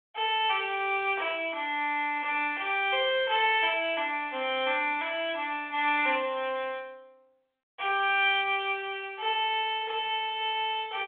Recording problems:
telephone audio; 300 Hz to 3.5 kHz, G.726

